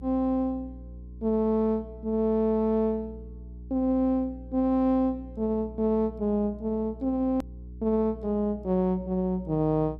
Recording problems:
hum; 60 Hz, harmonics up to 420 Hz, SNR 17 dB
edit click; at 7.5 s

